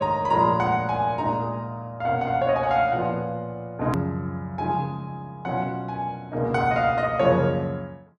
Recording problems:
hard cut with a click; at 4 s

